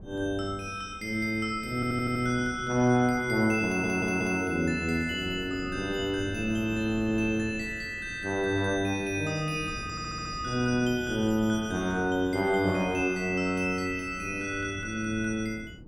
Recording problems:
wind noise; below 270 Hz, SNR 17 dB
stutter; at 2 s, at 3.5 s and at 10 s

